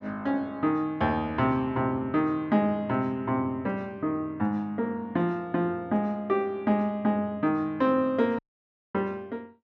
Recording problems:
audio cutting out; at 8.5 s for 0.5 s

